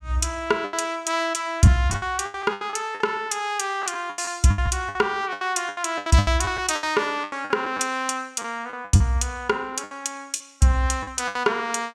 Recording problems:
lost packets; 14% of the sound replaced, filled with the last packet

